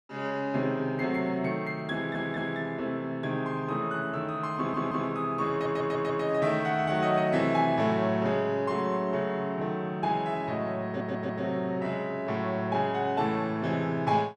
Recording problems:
audio stuttering; 4 times, first at 2 s

